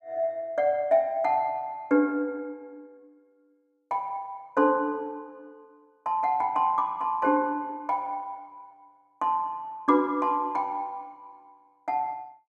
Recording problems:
none

